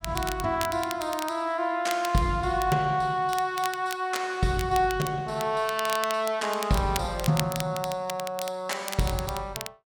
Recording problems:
crackling; vinyl, SNR 11 dB

